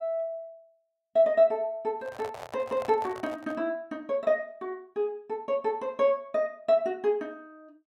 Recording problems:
handling noise; from 2 to 3.5 s; peak -8 dB vs average level

